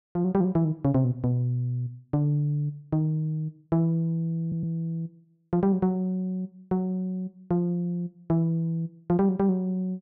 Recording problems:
stutter; at 4.5 s

